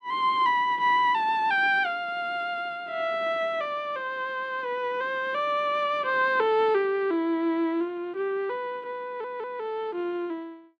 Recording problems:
audio stuttering; at 9 s

